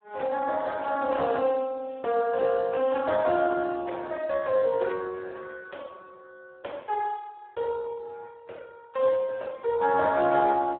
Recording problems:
phone line; 300 Hz to 2.1 kHz, Speex

